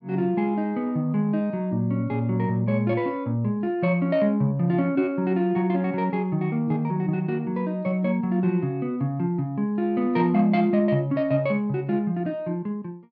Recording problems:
none

